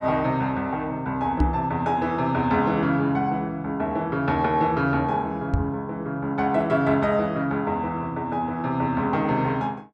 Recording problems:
microphone thump; at 1.5 s and at 5.5 s; peak +6 dB vs average level

